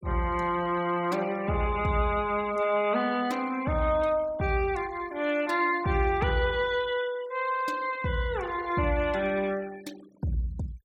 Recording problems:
noise reduction artefacts; signal-to-artefact ratio 20 dB

